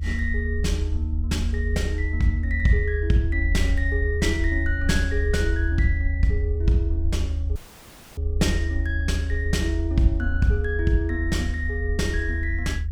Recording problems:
rumble; below 78 Hz, strongest tone 76 Hz, SNR 0 dB
audio cutting out; at 7.5 s for 0.5 s

